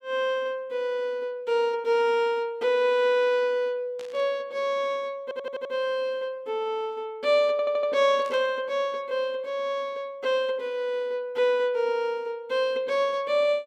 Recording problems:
burst of static; at 4 s and at 8 s; peak -14 dB vs average level
stutter; at 5 s and at 7.5 s

